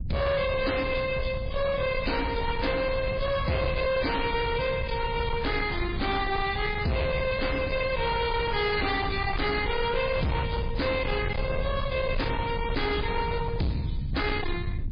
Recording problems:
lossy compression; MP3, log-spectral distance 5 dB, nothing above 4.8 kHz
distortion; hard clipping, signal-to-distortion ratio 7 dB
low-frequency rumble; below 170 Hz, SNR 6 dB

